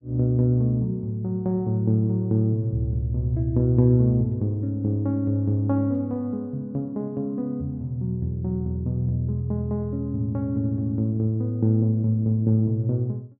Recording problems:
treble cut off; nothing above 7.3 kHz

